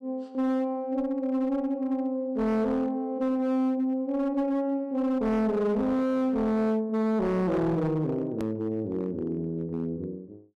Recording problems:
distortion; hard clipping, signal-to-distortion ratio 11 dB
click at an edit; at 8.5 s

